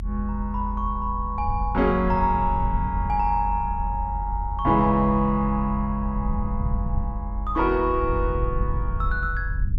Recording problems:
low-frequency rumble; below 76 Hz, strongest tone 46 Hz, SNR 5 dB

